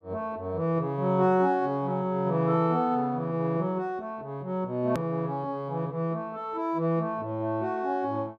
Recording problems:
edit click; at 5 s

